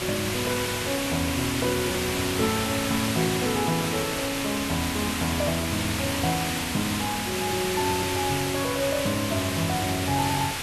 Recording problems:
background hiss; SNR 1 dB

